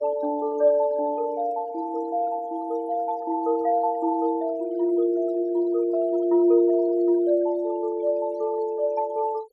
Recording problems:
noise reduction artefacts; signal-to-artefact ratio 25 dB

